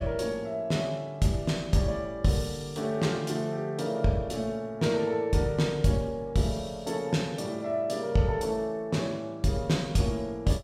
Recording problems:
none

